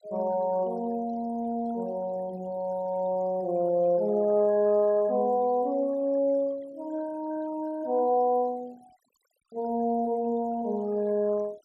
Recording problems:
denoising artefacts; signal-to-artefact ratio 27 dB

